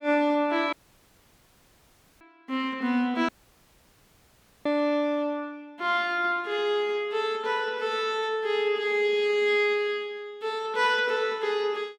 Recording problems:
audio cutting out; at 0.5 s for 1.5 s and at 3.5 s for 1.5 s

